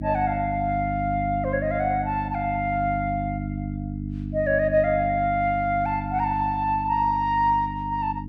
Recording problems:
mains hum; 50 Hz, harmonics up to 300 Hz, SNR 7 dB

